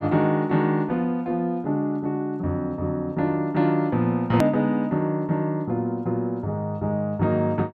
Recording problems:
hard cut with a click; at 4.5 s

